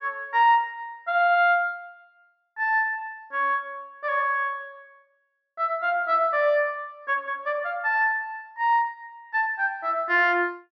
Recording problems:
treble cut off; nothing above 6.2 kHz

